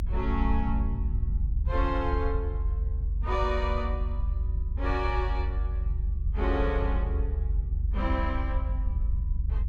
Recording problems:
low-frequency rumble; below 72 Hz, strongest tone 48 Hz, SNR -3 dB

